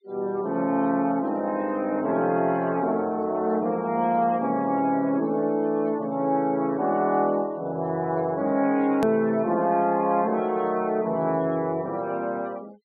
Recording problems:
treble cut off; nothing above 4.6 kHz
denoising artefacts; signal-to-artefact ratio 27 dB
click at an edit; at 9 s

